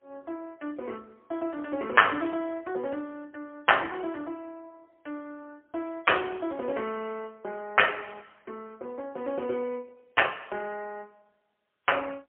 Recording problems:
phone line; 240 Hz to 3.1 kHz, AMR-NB, then MP3

